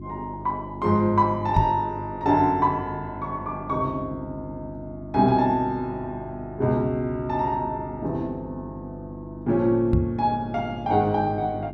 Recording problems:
hum; 50 Hz, harmonics up to 350 Hz, SNR 13 dB
microphone bump; at 1.5 s and at 10 s; peak +6 dB vs average level

